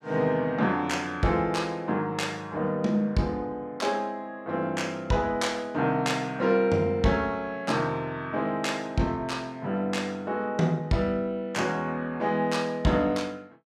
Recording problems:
none

